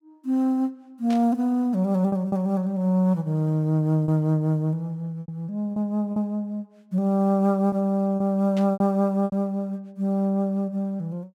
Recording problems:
lost packets; 5% of the sound replaced, filled with repeated pitch periods
static burst; at 1 s and at 8.5 s; peak -12 dB vs average level

